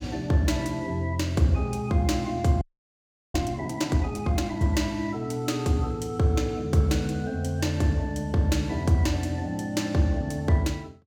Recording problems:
frozen audio; at 2.5 s for 0.5 s

